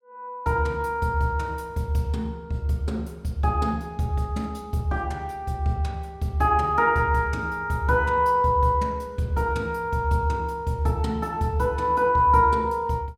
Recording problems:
none

